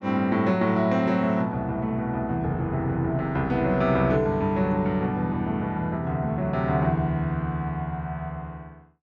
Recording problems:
none

